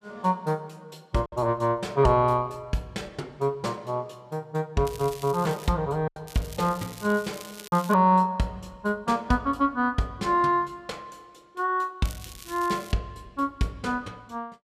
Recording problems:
lost packets; 1.2% of the sound replaced, filled with silence
crackling; at 5 s, from 6.5 to 8 s and at 12 s; loose cable, SNR 17 dB

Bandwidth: 14.5 kHz